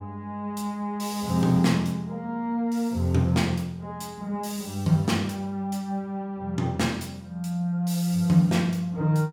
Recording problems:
none

